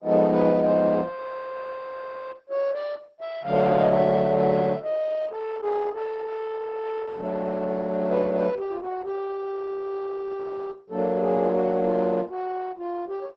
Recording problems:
lossy codec; MP2, then Opus, log-spectral distance 3 dB

